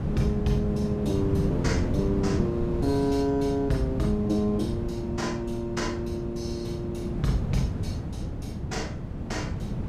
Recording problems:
wind noise; below 230 Hz, SNR 2 dB

